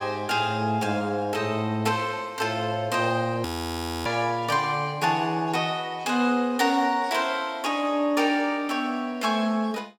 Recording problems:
audio freezing; at 3.5 s for 0.5 s

